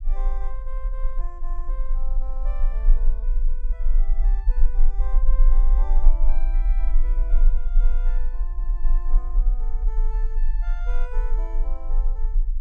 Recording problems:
rumble; below 34 Hz, strongest tone 22 Hz, SNR -19 dB

